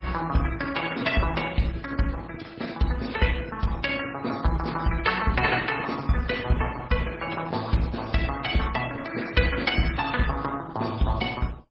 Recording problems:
codec artefacts; MP3, then Opus, log-spectral distance 5 dB, nothing above 7.6 kHz

